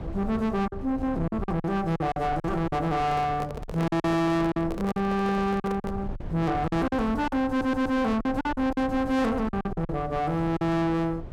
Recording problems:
distorted audio; soft clipping, signal-to-distortion ratio 8 dB
low-frequency rumble; below 230 Hz, SNR 12 dB
packet loss; 10% of the sound replaced, filled with silence
microphone handling noise; from 3 to 6 s; peak -4 dB vs average level
audio stuttering; at 7.5 s

